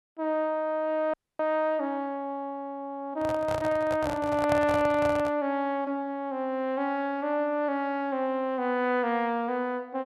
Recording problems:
dropout; at 1 s
handling noise; from 3 to 5.5 s; peak +1 dB vs average level

